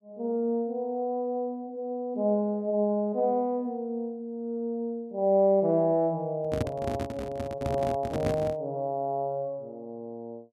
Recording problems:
microphone handling noise; from 6.5 to 8.5 s; peak +3 dB vs average level

